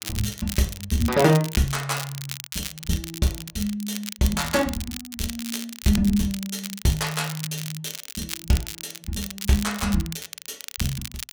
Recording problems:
crackling; vinyl, SNR 9 dB

